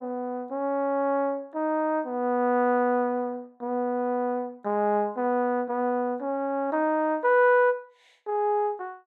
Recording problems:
none

